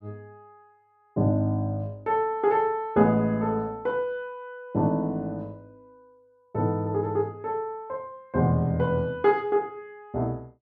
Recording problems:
none

